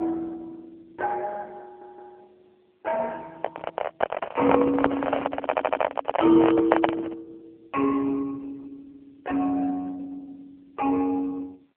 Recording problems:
telephone audio; 340 Hz to 2.6 kHz, AMR-NB
audio stuttering; at 1.5 s and at 5.5 s
microphone handling noise; from 3.5 to 7 s; peak +7 dB vs average level

